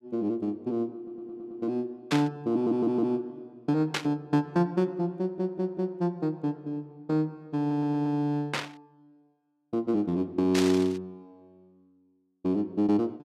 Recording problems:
stutter; 4 times, first at 1 s
static burst; 4 times, first at 2 s; peak +3 dB vs average level

